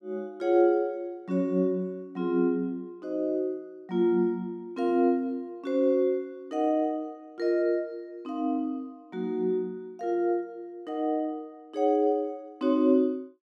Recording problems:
none

